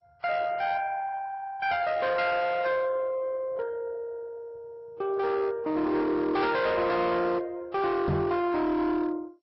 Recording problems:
codec artefacts; Vorbis, then MP2, log-spectral distance 2 dB, nothing above 5.5 kHz
distortion; hard clipping, signal-to-distortion ratio 11 dB
microphone thump; at 8 s; peak +4 dB vs average level

